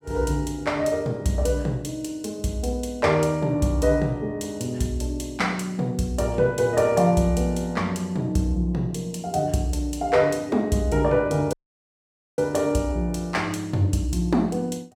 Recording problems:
audio cutting out; at 12 s for 1 s

